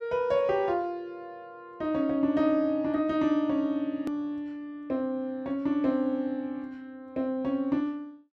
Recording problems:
edit click; at 4 s

